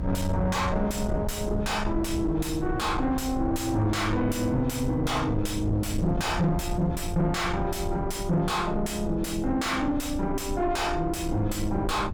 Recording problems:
distorted audio; soft clipping, signal-to-distortion ratio 6 dB
low-frequency rumble; below 120 Hz, SNR 7 dB

